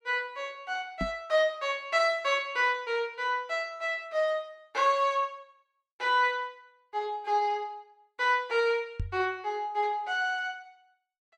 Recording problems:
microphone thump; at 1 s and at 9 s; peak -1 dB vs average level

